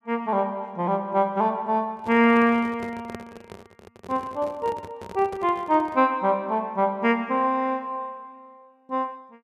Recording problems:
microphone handling noise; from 2 to 6 s; peak -8 dB vs average level

